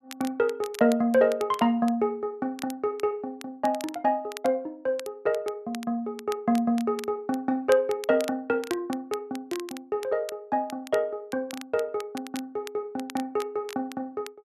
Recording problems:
crackle; vinyl, SNR 17 dB

